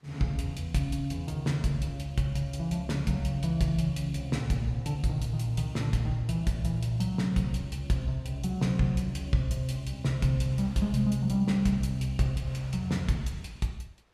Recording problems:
wind on the microphone; below 2.5 kHz, SNR 31 dB

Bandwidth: 14.5 kHz